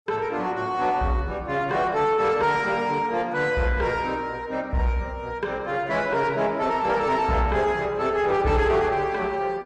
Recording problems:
lossy codec; AAC, log-spectral distance 2 dB, nothing above 10.4 kHz
distortion; soft clipping, signal-to-distortion ratio 11 dB

